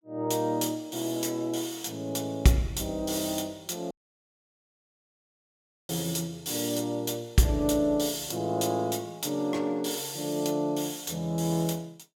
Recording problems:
audio cutting out; at 4 s for 2 s

